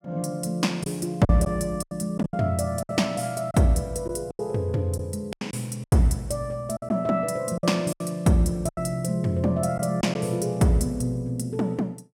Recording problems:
packet loss; 8% of the sound replaced, filled with silence

